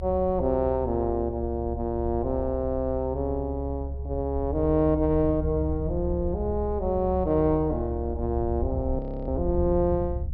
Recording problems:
treble cut off; nothing above 5.5 kHz
low-frequency rumble; below 72 Hz, strongest tone 68 Hz, SNR 6 dB
frozen audio; at 9 s

